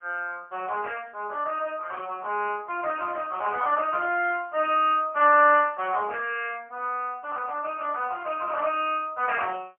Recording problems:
telephone audio; 320 Hz to 3.2 kHz, AMR-NB, then MP3

